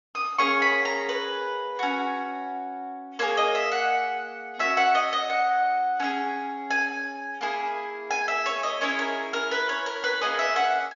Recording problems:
treble missing; nothing above 6.9 kHz

